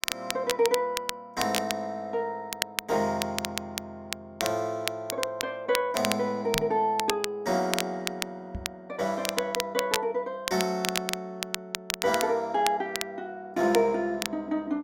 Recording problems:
crackle; vinyl, SNR 5 dB
microphone bump; at 6.5 s and at 8.5 s; peak -3 dB vs average level

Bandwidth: 16 kHz